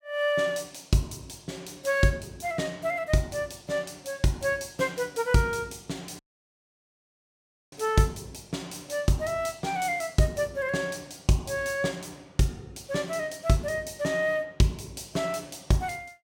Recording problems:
audio cutting out; at 6 s for 1.5 s

